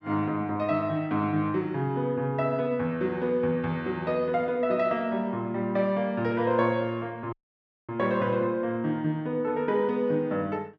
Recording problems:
audio cutting out; at 7.5 s for 0.5 s

